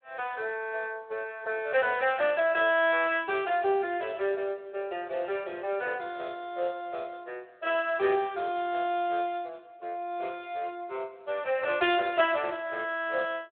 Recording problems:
telephone audio; 340 Hz to 3.6 kHz, Speex

